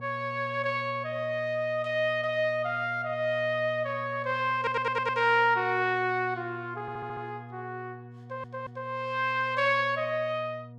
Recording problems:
mains hum; 60 Hz, harmonics up to 960 Hz, SNR 17 dB
stutter; at 4.5 s, at 7 s and at 8 s

